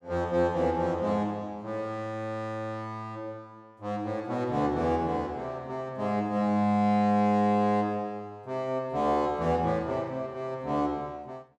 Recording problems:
none

